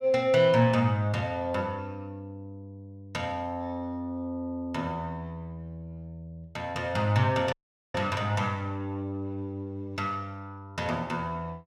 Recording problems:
audio cutting out; at 7.5 s

